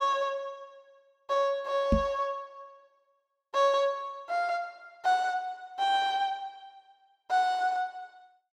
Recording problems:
microphone thump; at 2 s; peak +7 dB vs average level

